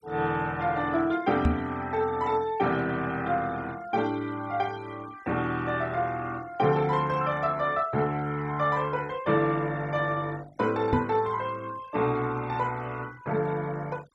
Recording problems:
noise reduction artefacts; signal-to-artefact ratio 22 dB
knock on the microphone; at 1.5 s and at 11 s; peak +8 dB vs average level

